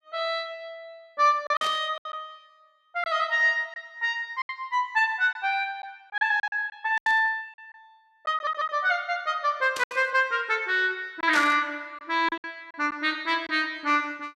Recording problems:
packet loss; 6% of the sound replaced, filled with silence
static burst; 4 times, first at 1.5 s; peak -2 dB vs average level
stutter; at 8.5 s

